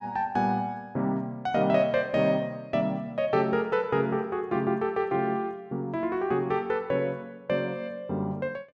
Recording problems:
none

